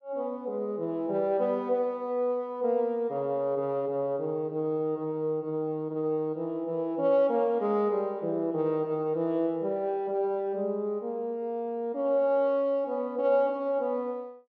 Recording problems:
none

